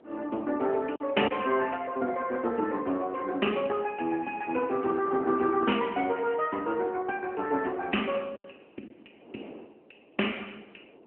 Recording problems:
telephone audio; 240 Hz to 3.1 kHz, AMR-NB
wind on the microphone; below 590 Hz, SNR 22 dB
packet loss; 1.5% of the sound replaced, filled with silence

